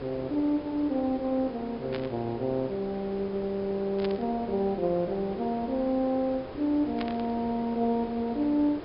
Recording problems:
treble cut off; nothing above 5.5 kHz
hiss; slope -8 dB per octave, SNR 12 dB
burst of static; at 2 s, at 4 s and at 7 s; peak -5 dB vs average level

